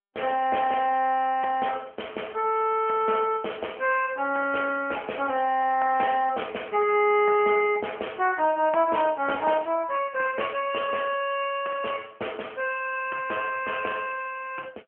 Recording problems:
telephone audio; 340 Hz to 3.1 kHz, AMR-NB

